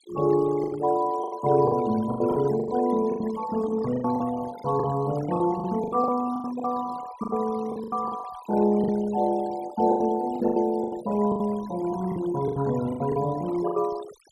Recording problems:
noise reduction artefacts; signal-to-artefact ratio 16 dB
lost packets; 14% of the sound replaced, filled with the last packet

